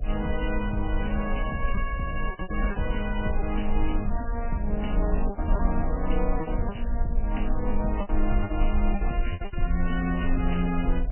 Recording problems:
codec artefacts; Vorbis, then MP3, log-spectral distance 2 dB, nothing above 2.5 kHz
hum; 60 Hz, harmonics up to 720 Hz, SNR 16 dB
low-frequency rumble; below 44 Hz, strongest tone 20 Hz, SNR 1 dB
lost packets; 8% of the sound replaced, filled with repeated pitch periods

